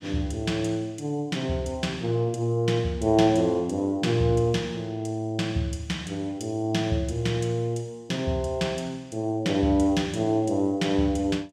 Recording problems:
none

